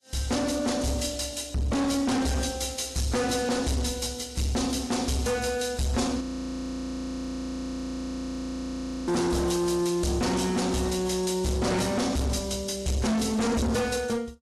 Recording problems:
codec artefacts; AAC, log-spectral distance 4 dB, nothing above 12 kHz
distorted audio; hard clipping, signal-to-distortion ratio 6 dB
frozen audio; at 6 s for 3 s

